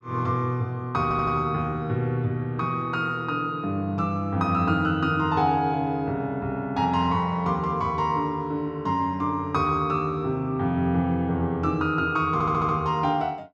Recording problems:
stutter; at 1 s and at 12 s

